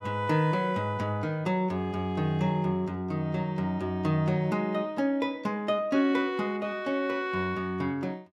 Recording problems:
none

